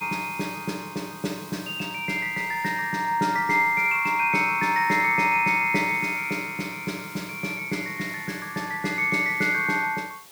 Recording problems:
hiss; slope 0 dB per octave, SNR 20 dB

